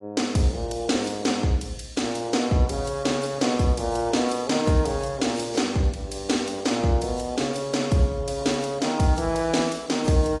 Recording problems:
codec artefacts; AAC, log-spectral distance 4 dB, nothing above 10.4 kHz

